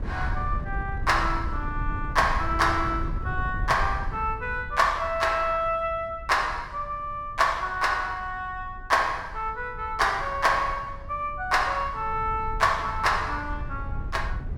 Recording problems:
wind noise; below 92 Hz, SNR 10 dB

